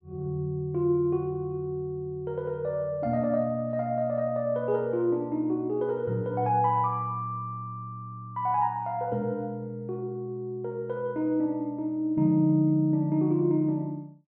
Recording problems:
none

